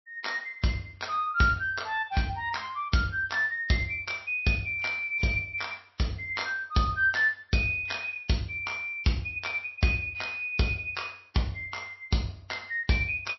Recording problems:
codec artefacts; MP3, log-spectral distance 3 dB, nothing above 5.7 kHz

